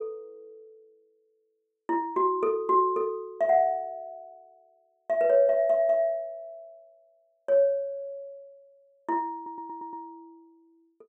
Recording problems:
audio stuttering; at 9.5 s

